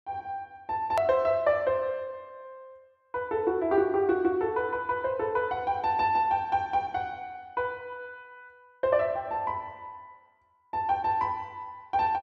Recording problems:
hard cut with a click; at 1 s

